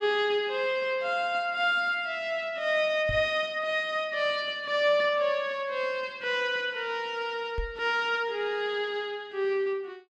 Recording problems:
microphone thump; at 3 s and at 7.5 s; peak -3 dB vs average level

